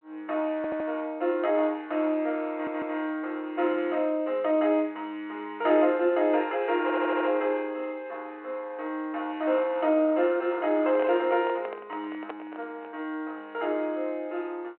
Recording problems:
telephone audio; 260 Hz to 3.2 kHz, G.726
stutter; at 0.5 s, at 2.5 s and at 7 s
microphone handling noise; from 11 to 13 s; peak -6 dB vs average level

